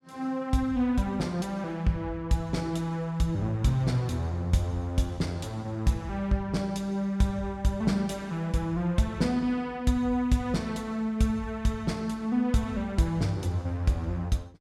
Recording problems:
none

